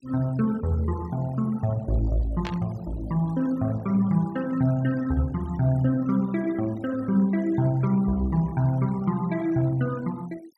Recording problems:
noise reduction artefacts; signal-to-artefact ratio 23 dB
static burst; at 2.5 s; peak -7 dB vs average level

